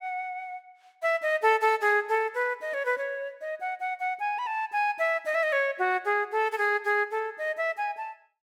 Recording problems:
none

